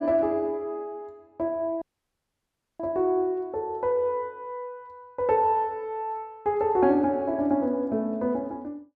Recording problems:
dropout; at 2 s for 1 s

